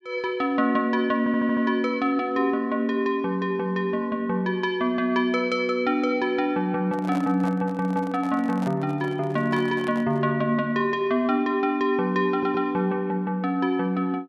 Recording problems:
audio stuttering; at 1 s and at 12 s
handling noise; from 7 to 10 s; peak -8 dB vs average level

